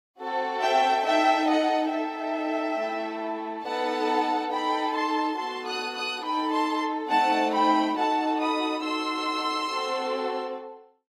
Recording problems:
lossy codec; AAC, log-spectral distance 2 dB, nothing above 14.7 kHz

